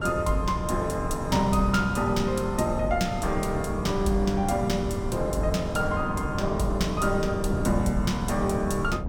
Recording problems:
wind on the microphone; below 210 Hz, SNR 6 dB

